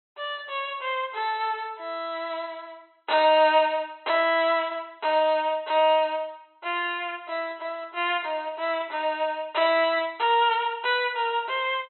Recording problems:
low-pass filter; nothing above 4 kHz

